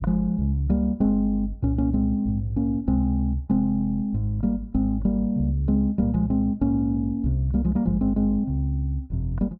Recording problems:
none

